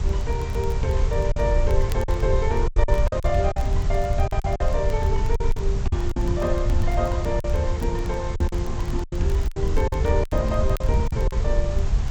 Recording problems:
codec artefacts; G.722, log-spectral distance 3 dB
background hiss; slope -4 dB per octave, SNR 12 dB
rumble; below 74 Hz, SNR -1 dB
crackle; vinyl, SNR 23 dB
lost packets; 9% of the sound replaced, filled with silence

